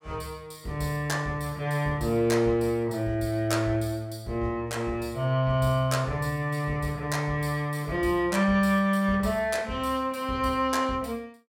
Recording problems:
none

